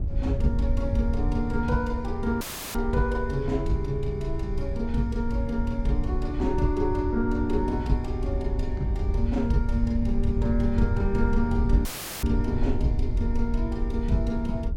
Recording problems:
wind on the microphone; below 82 Hz, SNR 1 dB
audio cutting out; at 2.5 s and at 12 s; filled with static

